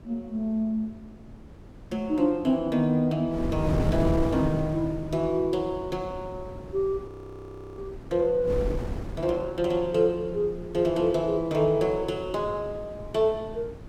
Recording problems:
wind on the microphone; below 300 Hz, SNR 9 dB
audio freezing; at 7 s for 0.5 s

